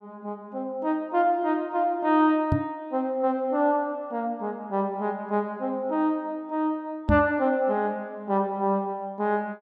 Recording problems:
microphone bump; at 2.5 s and at 7 s; peak +6 dB vs average level

